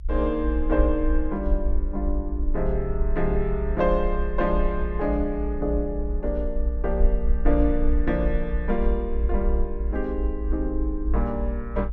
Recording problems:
rumble; below 56 Hz, SNR 1 dB

